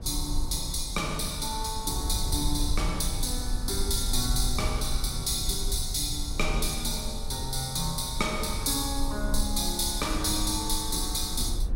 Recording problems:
low-frequency rumble; below 60 Hz, SNR 6 dB

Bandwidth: 16.5 kHz